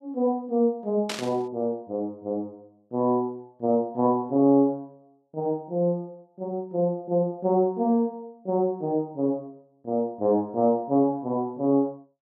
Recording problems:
static burst; at 1 s; peak -2 dB vs average level

